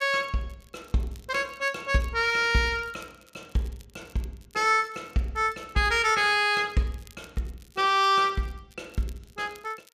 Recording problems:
crackle; vinyl, SNR 29 dB

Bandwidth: 14.5 kHz